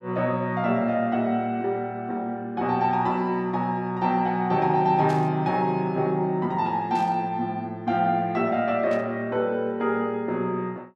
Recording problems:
burst of static; at 5 s, at 7 s and at 9 s; peak -13 dB vs average level

